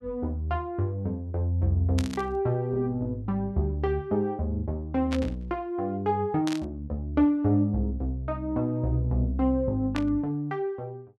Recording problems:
static burst; 4 times, first at 2 s; peak -3 dB vs average level

